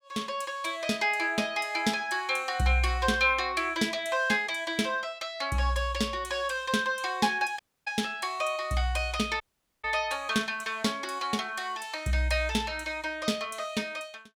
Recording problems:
dropout; at 7.5 s and at 9.5 s

